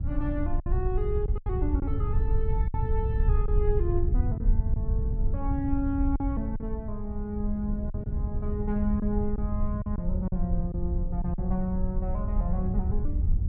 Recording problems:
low-frequency rumble; below 76 Hz, SNR -3 dB
wind on the microphone; below 160 Hz, SNR 12 dB
packet loss; 5% of the sound replaced, filled with silence

